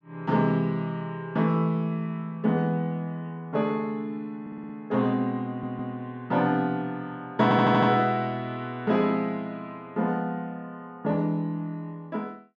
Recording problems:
audio stuttering; at 4.5 s, at 5.5 s and at 7.5 s

